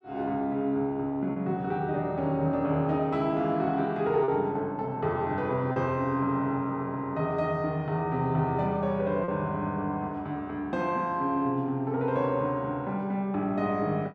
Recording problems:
lost packets; 1.1% of the sound replaced, filled with repeated pitch periods

